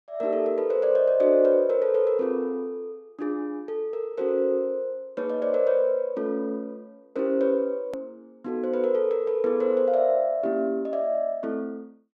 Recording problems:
hard cut with a click; at 8 s

